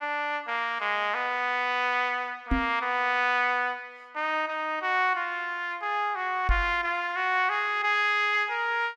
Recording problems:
microphone bump; at 2.5 s and at 6.5 s; peak +3 dB vs average level

